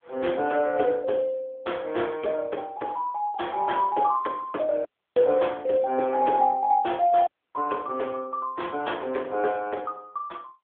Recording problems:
phone line; 260 Hz to 3.6 kHz, AMR-NB
audio cutting out; at 5 s and at 7.5 s

